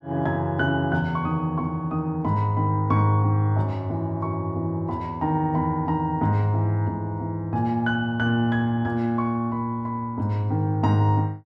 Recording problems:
none

